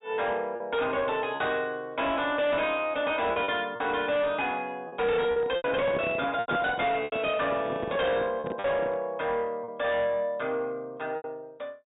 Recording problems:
low-pass filter; nothing above 4 kHz
distortion; soft clipping, signal-to-distortion ratio 10 dB
packet loss; 6% of the sound replaced, filled with repeated pitch periods
microphone handling noise; from 5 to 9 s; peak 0 dB vs average level

